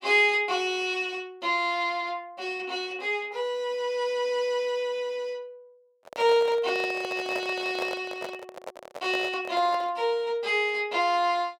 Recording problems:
microphone handling noise; from 6 to 10 s; peak -3 dB vs average level

